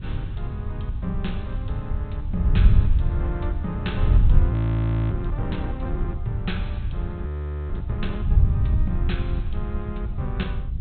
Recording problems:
low-pass filter; nothing above 4 kHz
hum; 50 Hz, harmonics up to 500 Hz, SNR 16 dB
background hiss; SNR 27 dB
wind noise; below 96 Hz, SNR -8 dB
frozen audio; at 4.5 s for 0.5 s and at 7.5 s

